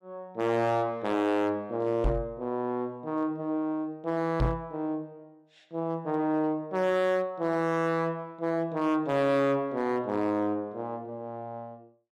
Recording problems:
distortion; hard clipping, signal-to-distortion ratio 12 dB
knock on the microphone; at 2 s and at 4.5 s; peak +5 dB vs average level

